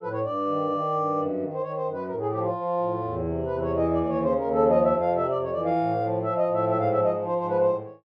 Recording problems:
none

